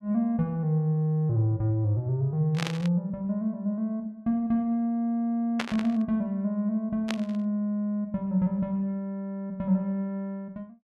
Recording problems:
burst of static; at 2.5 s, at 5.5 s and at 7 s; peak +2 dB vs average level

